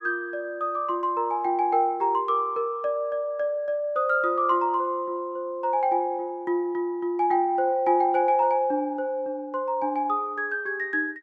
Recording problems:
none

